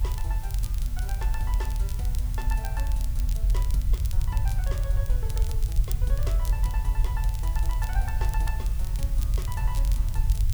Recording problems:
hiss; slope 0 dB per octave, SNR 7 dB
rumble; below 62 Hz, strongest tone 42 Hz, SNR -12 dB
crackle; vinyl, SNR 6 dB

